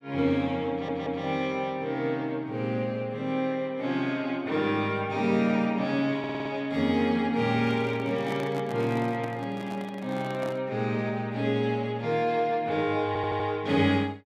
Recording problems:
stutter; at 0.5 s, at 6 s and at 13 s
microphone handling noise; from 7.5 to 11 s; peak -5 dB vs average level

